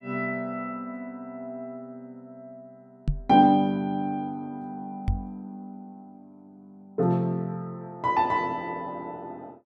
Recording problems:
microphone bump; at 3 s and at 5 s; peak +4 dB vs average level

